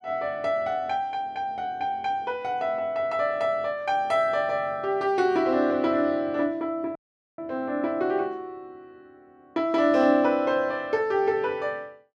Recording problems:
audio cutting out; at 7 s

